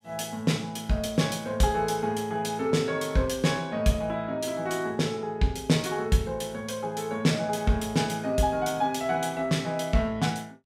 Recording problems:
none

